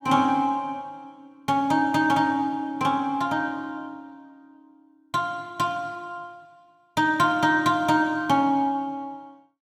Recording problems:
none

